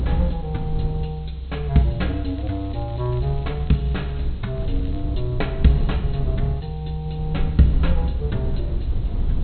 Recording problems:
treble missing; nothing above 4.2 kHz
hiss; SNR 27 dB
low-frequency rumble; below 72 Hz, SNR 2 dB
crackling; from 2.5 to 4.5 s and at 4.5 s; loose cable, SNR 27 dB

